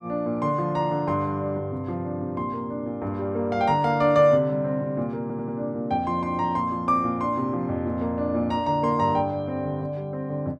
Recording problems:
audio stuttering; at 5 s

